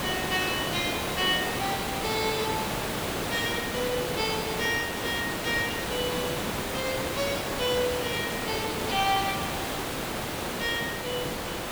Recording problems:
background hiss; slope -4 dB per octave, SNR 0 dB

